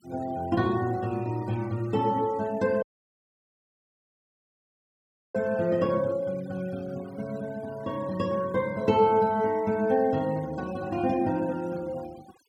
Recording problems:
noise reduction artefacts; signal-to-artefact ratio 22 dB
dropout; at 3 s for 2.5 s

